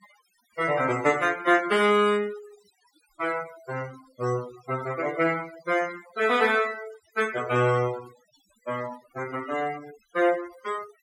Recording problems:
denoising artefacts; signal-to-artefact ratio 17 dB

